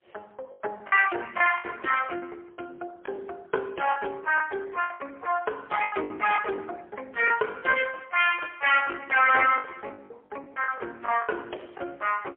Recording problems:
phone line; 320 Hz to 3.3 kHz, AMR-NB, then MP3
distorted audio; soft clipping, signal-to-distortion ratio 13 dB
packet loss; 9% of the sound replaced, filled with the last packet

